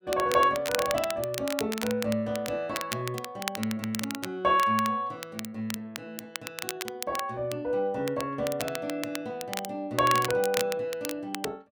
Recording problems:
crackling; vinyl, SNR 8 dB

